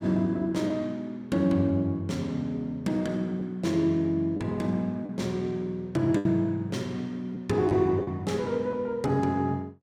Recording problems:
lost packets; 3% of the sound replaced, filled with the last packet

